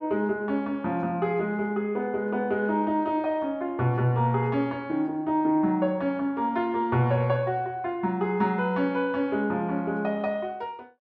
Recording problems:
none

